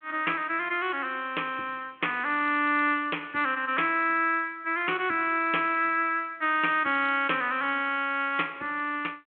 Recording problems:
phone line; 260 Hz to 3.4 kHz, G.726

